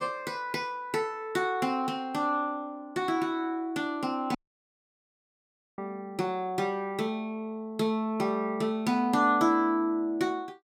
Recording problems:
dropout; at 4.5 s for 1.5 s

